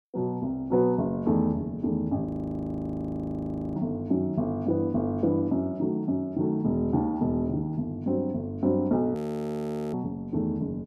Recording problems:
audio freezing; at 2.5 s for 1.5 s and at 9 s for 1 s

